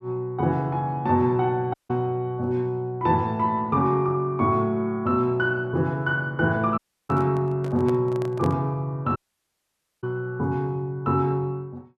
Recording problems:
audio cutting out; at 1.5 s, at 7 s and at 9 s for 1 s
handling noise; from 7 to 8.5 s; peak -6 dB vs average level

